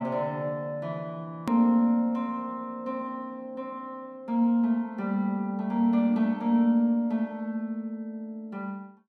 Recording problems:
hard cut with a click; at 1.5 s

